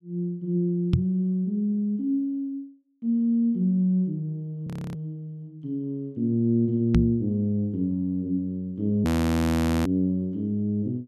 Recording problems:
microphone thump; at 1 s and at 7 s; peak +7 dB vs average level
audio freezing; at 4.5 s and at 9 s for 1 s

